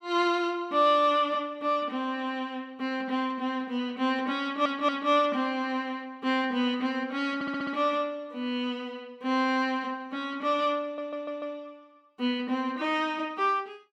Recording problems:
stutter; at 4.5 s, at 7.5 s and at 11 s

